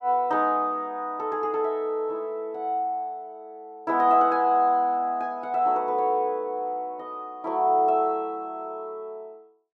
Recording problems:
none

